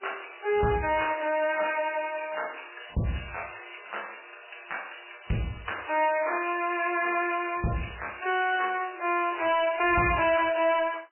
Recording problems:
lossy codec; MP3, log-spectral distance 12 dB, nothing above 2.7 kHz
distortion; soft clipping, signal-to-distortion ratio 10 dB

